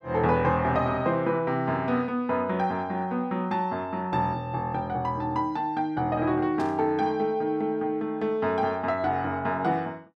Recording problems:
static burst; at 6.5 s; peak -13 dB vs average level

